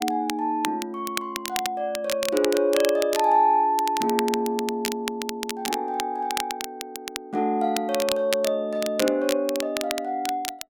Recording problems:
crackle; vinyl, SNR 8 dB

